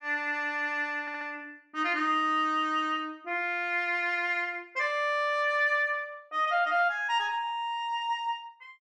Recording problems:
stutter; at 1 s

